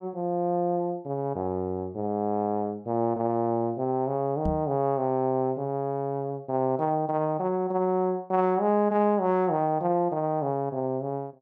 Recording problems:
microphone bump; at 4.5 s; peak 0 dB vs average level

